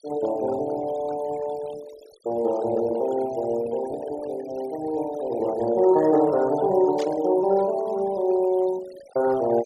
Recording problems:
denoising artefacts; signal-to-artefact ratio 20 dB
static burst; at 7 s; peak -12 dB vs average level

